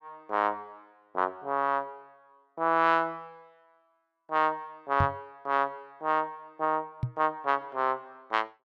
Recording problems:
microphone bump; at 5 s and at 7 s; peak +4 dB vs average level

